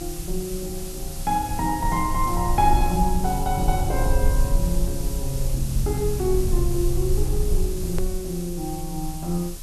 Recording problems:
hiss; slope +2 dB per octave, SNR 10 dB
low-frequency rumble; below 60 Hz, strongest tone 24 Hz, SNR 2 dB
edit click; at 8 s

